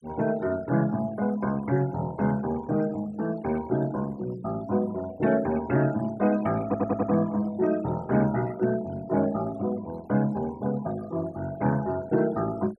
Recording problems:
noise reduction artefacts; signal-to-artefact ratio 20 dB
stutter; at 6.5 s

